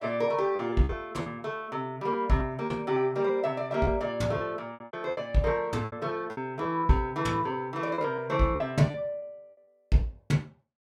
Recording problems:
lost packets; 9% of the sound replaced, filled with repeated pitch periods

